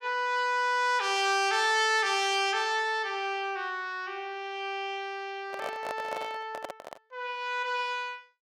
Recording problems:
handling noise; from 5.5 to 7 s; peak -4 dB vs average level

